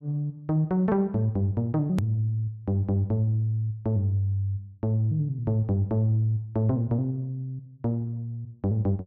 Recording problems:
edit click; at 2 s

